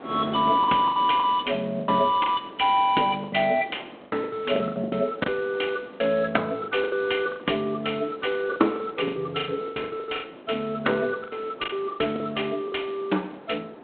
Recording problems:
phone line; 240 Hz to 3.5 kHz, G.726
wind noise; below 750 Hz, SNR 17 dB
lost packets; 14% of the sound replaced, filled with the last packet

